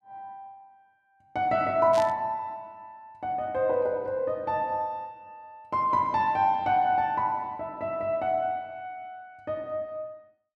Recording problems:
static burst; at 2 s; peak -7 dB vs average level

